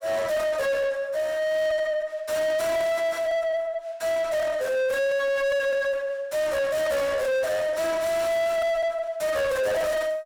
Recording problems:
distorted audio; soft clipping, signal-to-distortion ratio 5 dB

